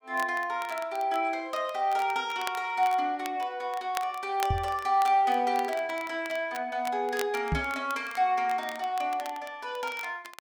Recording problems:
crackle; vinyl, SNR 17 dB
knock on the microphone; at 4.5 s and at 7.5 s; peak +3 dB vs average level

